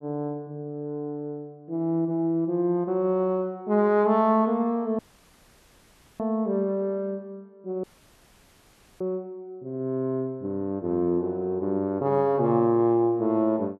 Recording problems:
dropout; at 5 s for 1 s and at 8 s for 1 s

